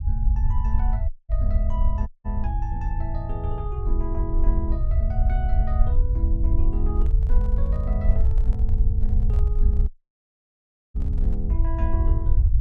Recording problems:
low-frequency rumble; below 66 Hz, SNR -10 dB
dropout; at 1 s, at 2 s and at 10 s for 1 s
microphone handling noise; from 7 to 11 s; peak -9 dB vs average level

